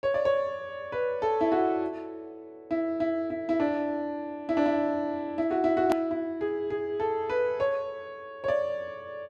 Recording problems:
edit click; at 6 s

